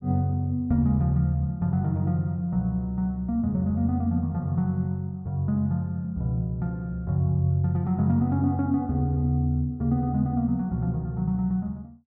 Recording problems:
none

